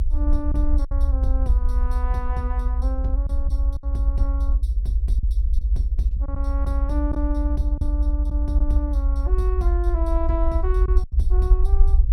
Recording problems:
hum; 60 Hz, harmonics up to 540 Hz, SNR 27 dB
rumble; below 62 Hz, SNR -9 dB
packet loss; 3% of the sound replaced, filled with silence

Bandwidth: 16.5 kHz